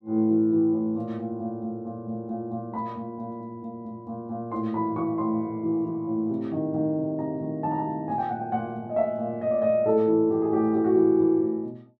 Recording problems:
none

